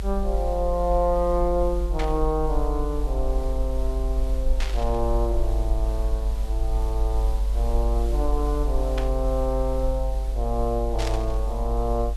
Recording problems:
hiss; slope -3 dB per octave, SNR 18 dB
low-frequency rumble; below 50 Hz, strongest tone 48 Hz, SNR -1 dB
static burst; 4 times, first at 2 s; peak -1 dB vs average level

